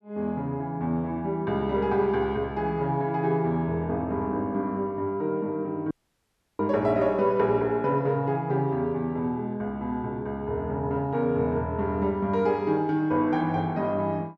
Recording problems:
dropout; at 6 s for 0.5 s

